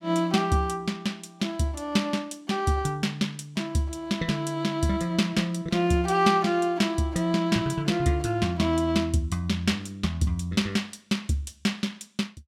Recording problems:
none

